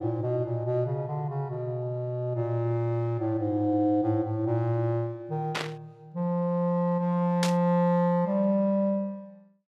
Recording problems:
burst of static; at 5.5 s and at 7.5 s; peak +2 dB vs average level

